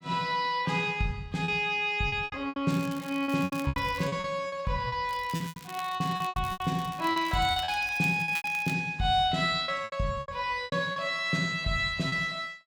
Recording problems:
packet loss; 12% of the sound replaced, filled with repeated pitch periods
crackling; from 2.5 to 4 s and from 5 to 8.5 s; loose cable, SNR 18 dB

